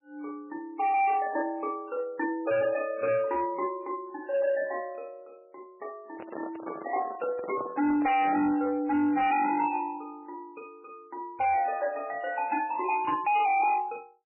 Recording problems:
codec artefacts; MP3, log-spectral distance 3 dB, nothing above 2.5 kHz
distorted audio; hard clipping, signal-to-distortion ratio 7 dB
handling noise; from 6 to 8.5 s; peak -5 dB vs average level

